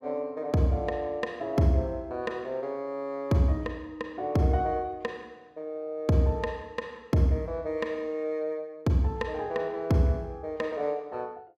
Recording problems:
none

